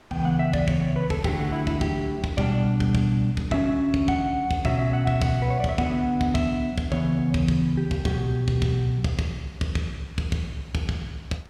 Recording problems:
wind noise; below 1.9 kHz, SNR 28 dB

